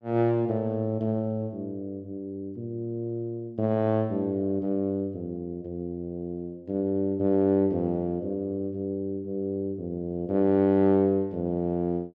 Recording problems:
none

